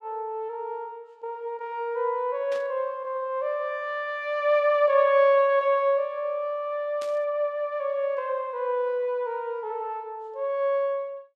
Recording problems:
static burst; at 2.5 s and at 7 s; peak -12 dB vs average level

